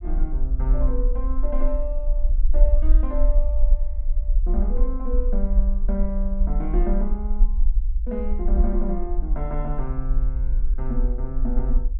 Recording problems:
low-pass filter; nothing above 5 kHz
low-frequency rumble; below 44 Hz, SNR -7 dB

